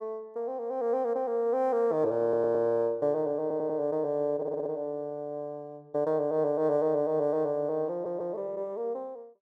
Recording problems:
audio stuttering; 4 times, first at 2 s

